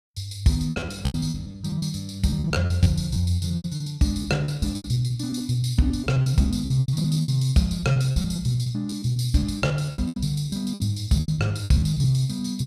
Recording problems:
lost packets; 19% of the sound replaced, filled with repeated pitch periods

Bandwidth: 14.5 kHz